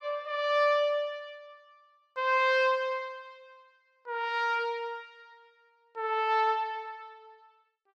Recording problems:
none

